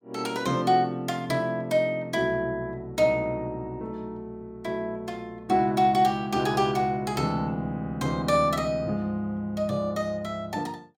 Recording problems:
none

